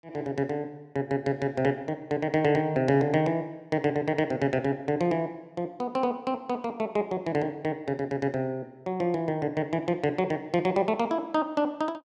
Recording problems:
none

